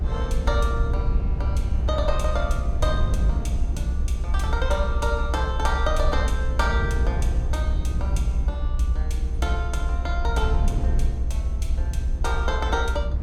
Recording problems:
rumble; below 66 Hz, SNR -4 dB

